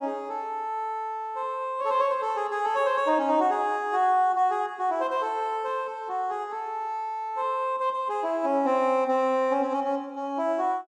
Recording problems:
none

